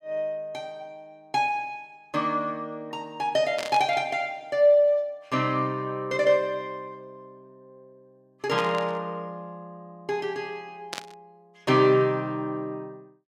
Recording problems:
static burst; at 3.5 s, at 8.5 s and at 11 s; peak -3 dB vs average level

